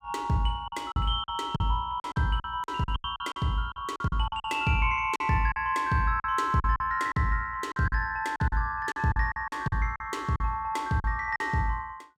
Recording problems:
packet loss; 12% of the sound replaced, filled with silence

